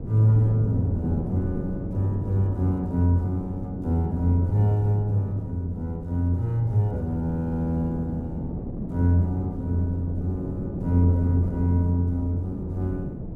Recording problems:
wind on the microphone; below 280 Hz, SNR 9 dB

